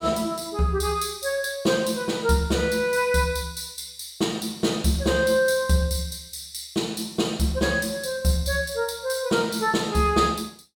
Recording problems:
none

